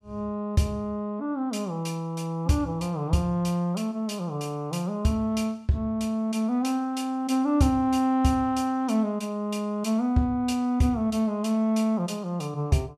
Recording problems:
none

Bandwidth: 14.5 kHz